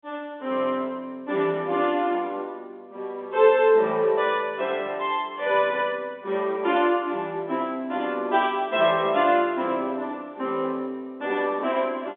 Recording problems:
phone line; 240 Hz to 3.6 kHz, G.711

